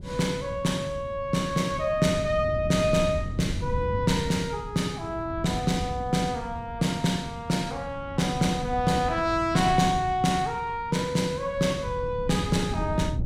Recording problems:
wind on the microphone; below 150 Hz, SNR 10 dB

